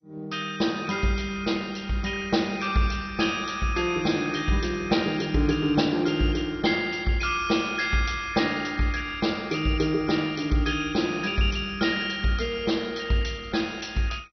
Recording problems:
lossy codec; MP2, log-spectral distance 6 dB, nothing above 6 kHz

